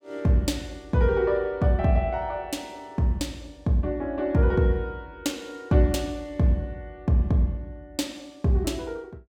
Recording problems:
none

